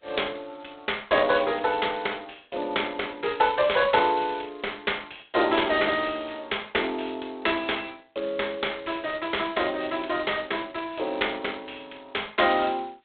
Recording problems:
telephone audio; 340 Hz to 3.7 kHz, G.726

